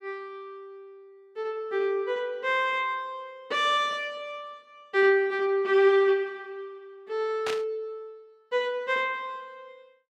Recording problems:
static burst; at 7.5 s; peak -2 dB vs average level

